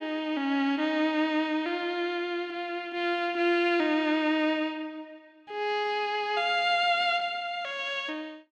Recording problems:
none

